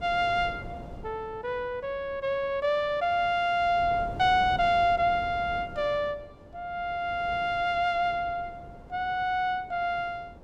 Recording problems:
wind noise; below 480 Hz, SNR 17 dB

